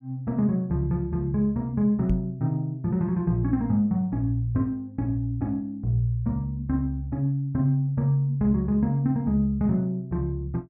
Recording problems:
microphone bump; at 2 s; peak +2 dB vs average level

